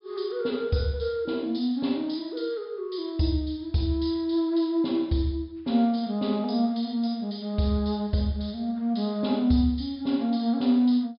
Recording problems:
treble cut off; nothing above 5.5 kHz

